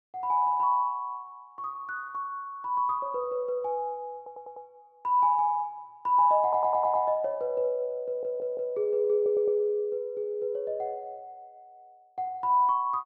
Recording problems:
audio stuttering; 4 times, first at 4 s

